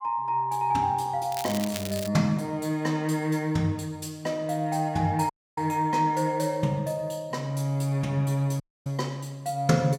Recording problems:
crackle; at 1.5 s; loose cable, SNR 10 dB
dropout; at 5.5 s and at 8.5 s

